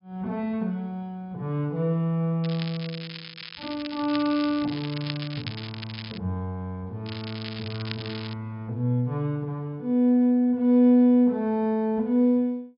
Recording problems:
low-pass filter; nothing above 5.5 kHz
crackle; from 2.5 to 6 s and from 7 to 8.5 s; loose cable, SNR 13 dB

